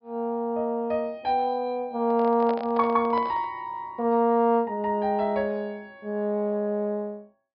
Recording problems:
low-pass filter; nothing above 5.5 kHz
handling noise; from 2 to 3.5 s; peak -5 dB vs average level

